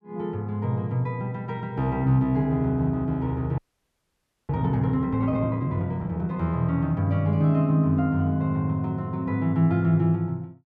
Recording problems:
frozen audio; at 3.5 s for 1 s

